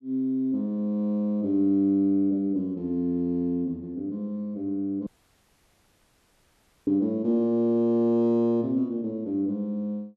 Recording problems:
dropout; at 5 s for 2 s

